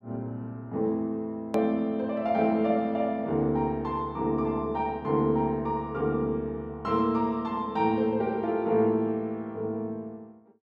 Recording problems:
click at an edit; at 1.5 s

